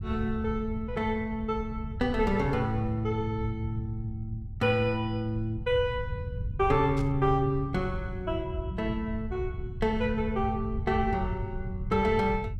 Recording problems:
rumble; below 110 Hz, SNR 8 dB
burst of static; at 7 s; peak -13 dB vs average level

